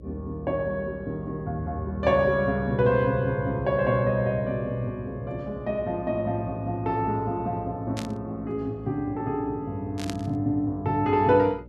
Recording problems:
hum; 60 Hz, harmonics up to 600 Hz, SNR 19 dB
static burst; at 8 s and at 10 s; peak -5 dB vs average level

